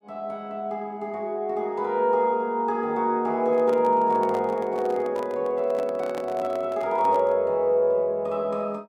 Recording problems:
handling noise; from 3.5 to 7.5 s; peak -7 dB vs average level

